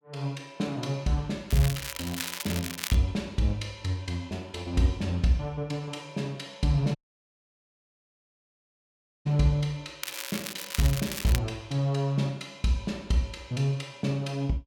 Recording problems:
crackling; from 1.5 to 3 s and from 10 to 11 s; loose cable, SNR 6 dB
dropout; at 7 s for 2.5 s

